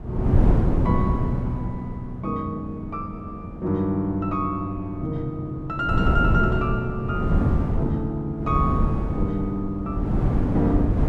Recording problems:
wind noise; below 220 Hz, SNR -3 dB

